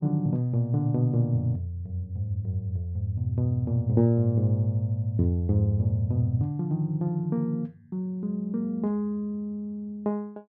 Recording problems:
none

